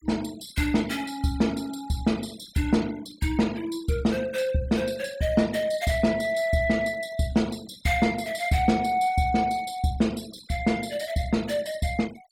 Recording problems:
noise reduction artefacts; signal-to-artefact ratio 21 dB

